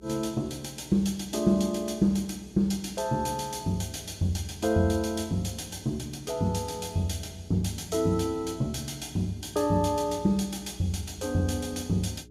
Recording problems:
mains hum; 60 Hz, harmonics up to 420 Hz, SNR 22 dB

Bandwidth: 15.5 kHz